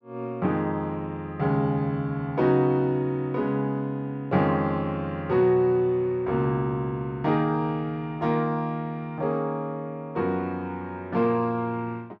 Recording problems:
none

